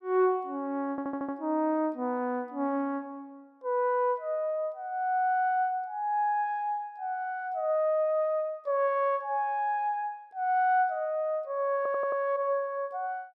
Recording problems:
audio stuttering; at 1 s and at 12 s

